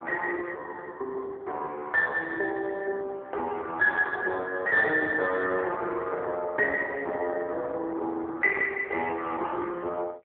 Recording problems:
phone line; 300 Hz to 2.6 kHz, AMR-NB

